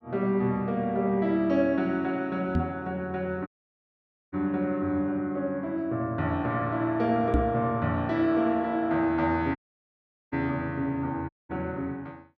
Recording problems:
microphone bump; at 2.5 s and at 7.5 s; peak +6 dB vs average level
dropout; at 3.5 s for 1 s, at 9.5 s for 1 s and at 11 s

